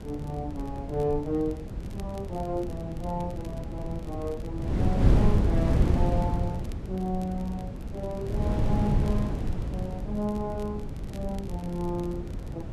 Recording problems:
wind noise; below 170 Hz, SNR -3 dB
crackling; vinyl, SNR 23 dB

